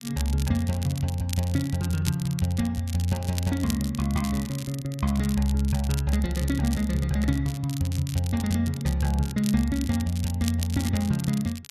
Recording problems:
crackling; vinyl, SNR 13 dB

